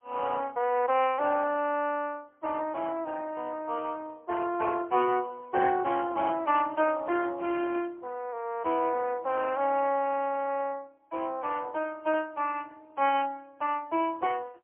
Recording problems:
telephone audio; 300 Hz to 3.1 kHz, AMR-NB, then MP3

